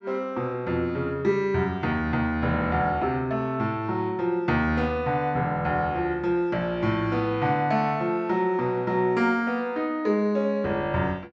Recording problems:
treble cut off; nothing above 8 kHz

